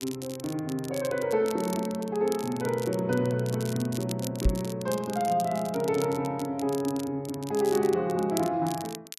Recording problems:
crackle; vinyl, SNR 14 dB
knock on the microphone; at 4.5 s; peak +7 dB vs average level

